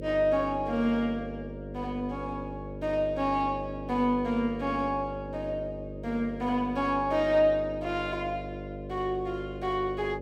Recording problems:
electrical hum; 50 Hz, harmonics up to 600 Hz, SNR 10 dB

